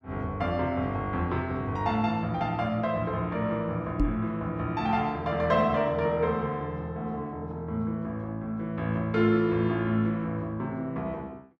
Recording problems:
microphone thump; at 4 s; peak +5 dB vs average level

